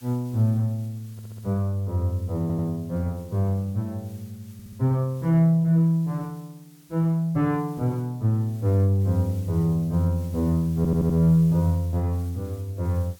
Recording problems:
background hiss; slope 0 dB per octave, SNR 28 dB
audio stuttering; 4 times, first at 1 s

